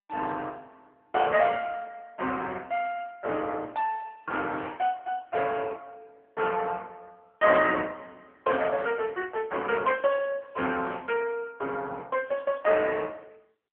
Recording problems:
phone line; 340 Hz to 3.1 kHz, AMR-NB

